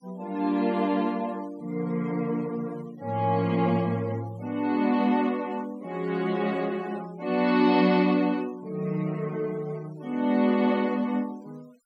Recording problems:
denoising artefacts; signal-to-artefact ratio 25 dB

